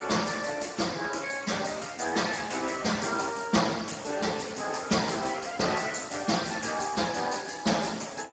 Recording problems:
codec artefacts; Speex, log-spectral distance 8 dB, nothing above 7.6 kHz

